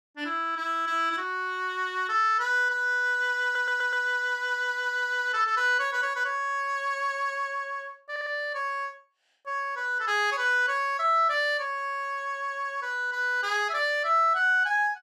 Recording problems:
stutter; at 3.5 s and at 8 s

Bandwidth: 14 kHz